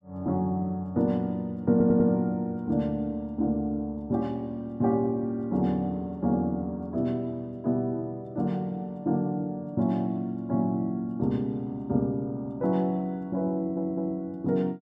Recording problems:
stutter; at 1.5 s and at 14 s

